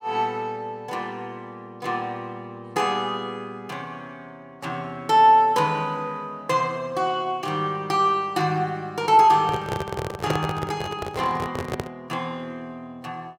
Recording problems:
handling noise; from 9.5 to 12 s; peak +2 dB vs average level

